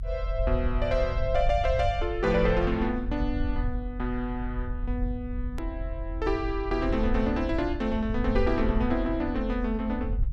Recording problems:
low-frequency rumble; below 64 Hz, SNR 4 dB
click at an edit; at 5.5 s

